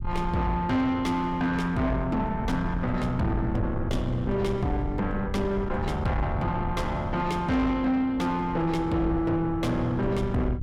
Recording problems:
distortion; soft clipping, signal-to-distortion ratio 10 dB
low-frequency rumble; below 120 Hz, SNR 8 dB

